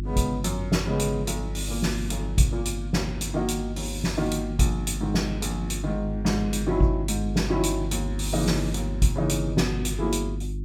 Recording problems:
mains hum; 50 Hz, harmonics up to 350 Hz, SNR 5 dB

